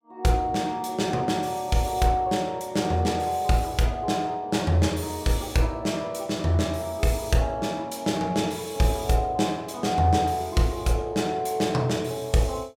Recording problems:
none

